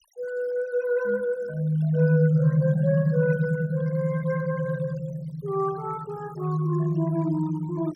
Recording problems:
noise reduction artefacts; signal-to-artefact ratio 23 dB

